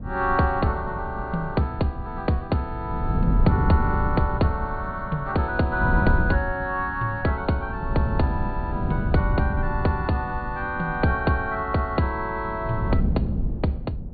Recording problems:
treble missing; nothing above 4.5 kHz
wind on the microphone; below 170 Hz, SNR 4 dB

